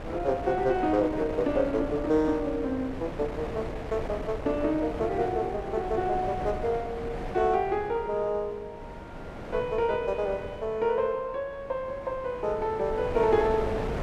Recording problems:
wind on the microphone; below 690 Hz, SNR 10 dB

